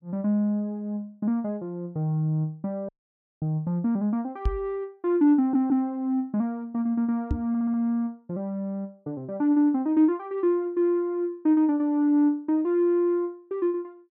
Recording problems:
dropout; at 3 s for 0.5 s
microphone bump; at 4.5 s and at 7.5 s; peak +2 dB vs average level
stutter; at 5.5 s and at 7.5 s

